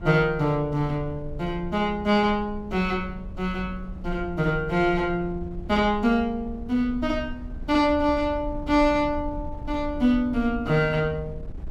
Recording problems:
wind noise; below 80 Hz, SNR 14 dB

